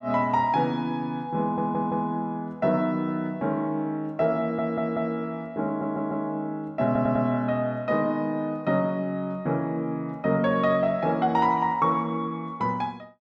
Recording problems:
stutter; 4 times, first at 1.5 s

